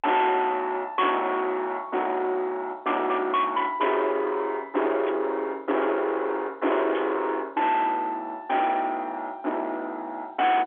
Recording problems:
phone line; 280 Hz to 3.6 kHz, G.711
distorted audio; soft clipping, signal-to-distortion ratio 8 dB
static burst; at 1 s, at 5 s and at 7 s; peak -9 dB vs average level

